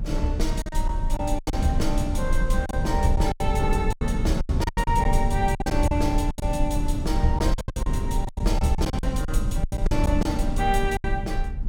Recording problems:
low-frequency rumble; below 70 Hz, strongest tone 24 Hz, SNR 1 dB
wind on the microphone; below 160 Hz, SNR 12 dB
lost packets; 14% of the sound replaced, filled with silence

